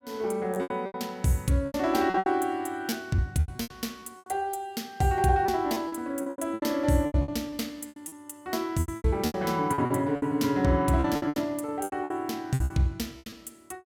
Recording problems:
lost packets; 16% of the sound replaced, filled with repeated pitch periods

